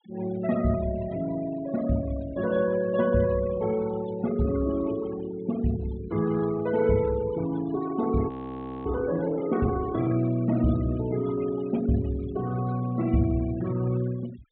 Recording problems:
treble cut off; nothing above 4 kHz
noise reduction artefacts; signal-to-artefact ratio 17 dB
frozen audio; at 8.5 s for 0.5 s

